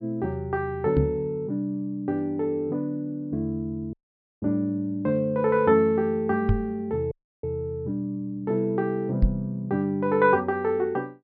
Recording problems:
treble missing; nothing above 5.5 kHz
knock on the microphone; at 1 s, at 6.5 s and at 9 s; peak +7 dB vs average level
audio cutting out; at 4 s and at 7 s

